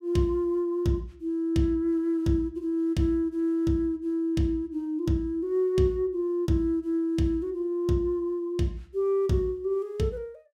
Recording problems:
none

